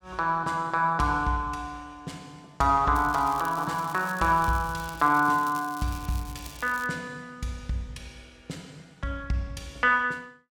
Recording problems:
crackle; from 3 to 7 s; loose cable, SNR 19 dB

